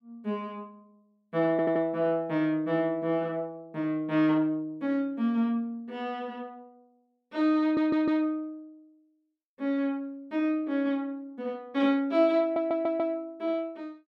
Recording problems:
stutter; at 1.5 s, at 7.5 s and at 12 s

